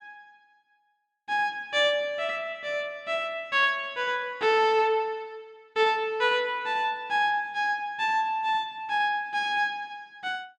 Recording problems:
none

